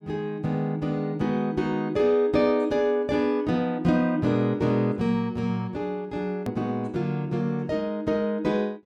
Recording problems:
click at an edit; at 6.5 s

